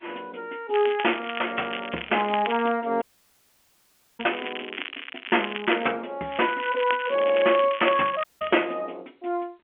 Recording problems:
phone line; 260 Hz to 3.2 kHz, G.711
crackle; from 0.5 to 2.5 s, from 4 to 6 s and from 6.5 to 8.5 s; loose cable, SNR 10 dB
audio cutting out; at 3 s for 1 s and at 8 s

